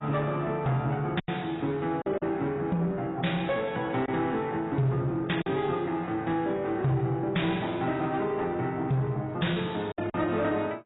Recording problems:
lossy compression; AAC, log-spectral distance 3 dB, nothing above 3.8 kHz
distortion; soft clipping, signal-to-distortion ratio 12 dB
packet loss; 3% of the sound replaced, filled with silence

